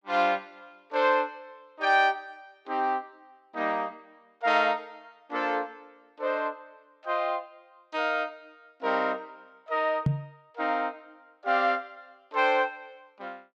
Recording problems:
microphone bump; at 10 s; peak +6 dB vs average level

